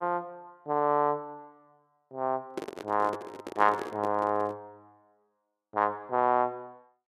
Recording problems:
microphone handling noise; from 2.5 to 4.5 s; peak -1 dB vs average level

